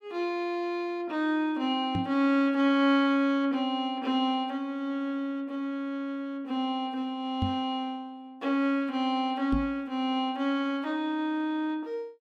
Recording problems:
microphone bump; at 2 s, at 7.5 s and at 9.5 s; peak +3 dB vs average level

